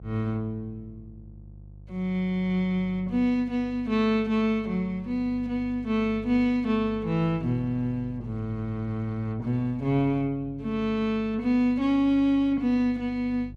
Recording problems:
hum; 50 Hz, harmonics up to 500 Hz, SNR 19 dB

